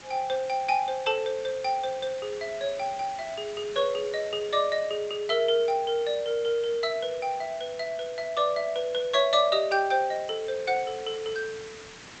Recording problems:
codec artefacts; G.722, log-spectral distance 6 dB
background hiss; slope -1 dB per octave, SNR 18 dB

